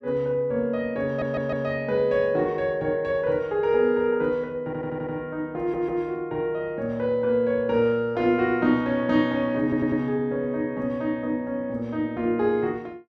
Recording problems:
audio stuttering; 4 times, first at 1 s

